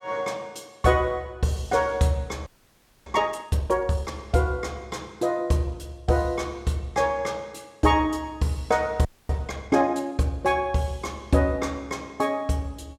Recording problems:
frozen audio; at 2.5 s for 0.5 s and at 9 s

